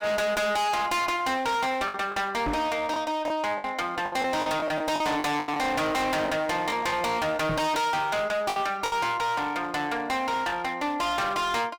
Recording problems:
distortion; hard clipping, uneven, signal-to-distortion ratio 5 dB
packet loss; 6% of the sound replaced, filled with the last packet
microphone thump; at 2.5 s and at 7.5 s; peak 0 dB vs average level

